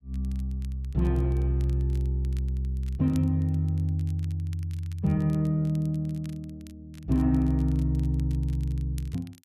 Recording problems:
crackling; vinyl, SNR 28 dB

